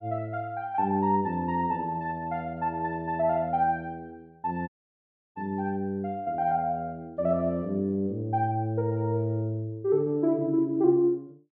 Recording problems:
audio cutting out; at 4.5 s for 0.5 s

